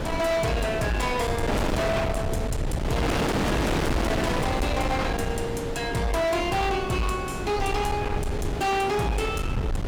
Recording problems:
distorted audio; hard clipping, signal-to-distortion ratio 7 dB
rumble; below 150 Hz, SNR 6 dB
wind noise; below 990 Hz, SNR 2 dB

